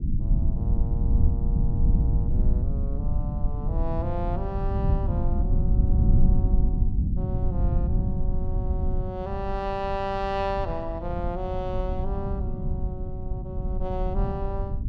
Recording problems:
low-frequency rumble; below 96 Hz, SNR -7 dB

